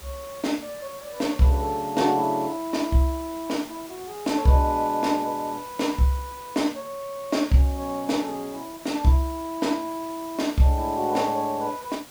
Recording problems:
hiss; slope -2 dB per octave, SNR 18 dB

